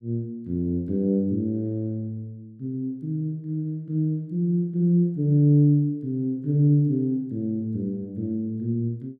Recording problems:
none

